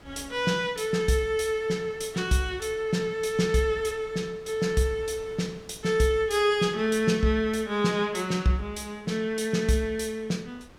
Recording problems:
wind on the microphone; below 1.1 kHz, SNR 25 dB

